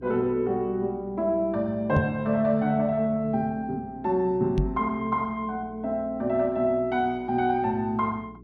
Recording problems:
hum; 60 Hz, harmonics up to 420 Hz, SNR 22 dB
microphone thump; at 2 s and at 4.5 s; peak +4 dB vs average level

